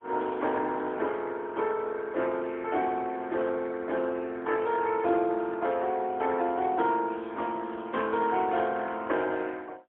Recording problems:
phone line; 280 Hz to 3.6 kHz, AMR-NB, then MP3

